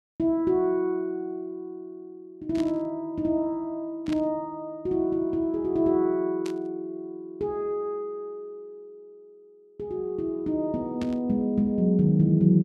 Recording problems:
static burst; 4 times, first at 2.5 s; peak -10 dB vs average level

